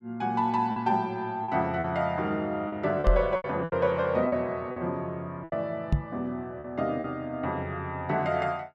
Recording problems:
packet loss; 7% of the sound replaced, filled with repeated pitch periods
microphone bump; at 3 s and at 6 s; peak +8 dB vs average level

